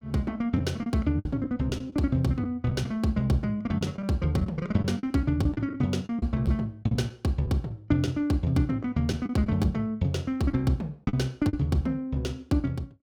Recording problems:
lost packets; 6% of the sound replaced, filled with the last packet

